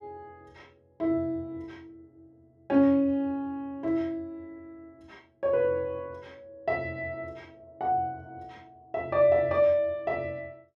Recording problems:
none

